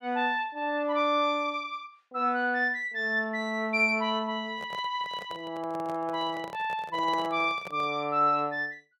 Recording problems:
handling noise; from 4.5 to 8 s; peak -7 dB vs average level

